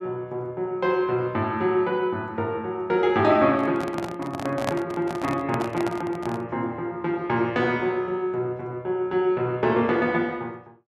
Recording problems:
microphone handling noise; from 3.5 to 6.5 s; peak +2 dB vs average level

